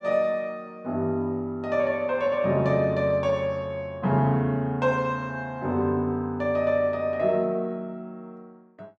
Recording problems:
none

